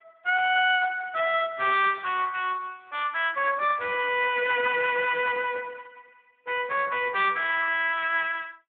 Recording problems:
phone line; 340 Hz to 3.6 kHz, Speex

